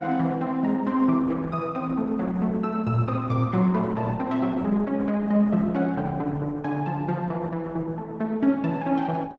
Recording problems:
lossy codec; Opus, log-spectral distance 2 dB

